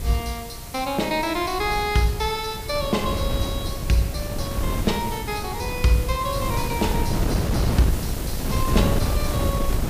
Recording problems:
hiss; slope 0 dB per octave, SNR 11 dB
wind on the microphone; below 230 Hz, SNR 2 dB

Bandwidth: 15 kHz